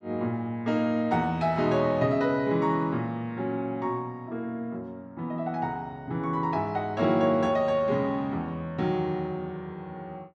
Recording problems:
none

